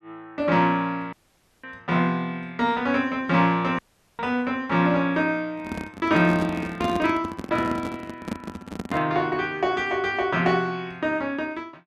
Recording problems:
audio cutting out; at 1 s for 0.5 s and at 4 s
handling noise; from 5.5 to 9 s; peak 0 dB vs average level

